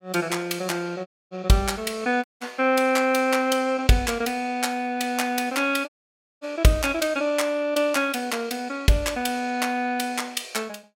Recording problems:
audio cutting out; at 1 s, at 2 s and at 6 s for 0.5 s

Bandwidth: 17 kHz